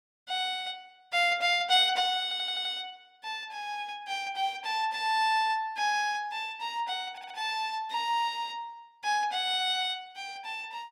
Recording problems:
audio stuttering; at 2 s and at 7 s

